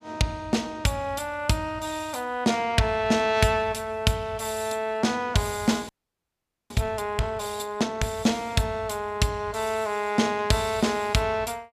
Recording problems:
frozen audio; at 6 s for 1 s

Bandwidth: 15 kHz